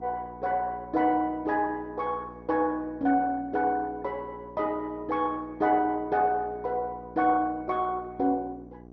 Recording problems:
lossy compression; MP2, log-spectral distance 2 dB, nothing above 5.8 kHz
electrical hum; 60 Hz, harmonics up to 840 Hz, SNR 20 dB

